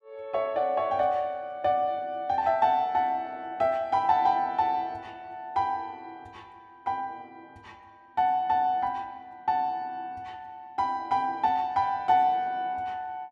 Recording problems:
none

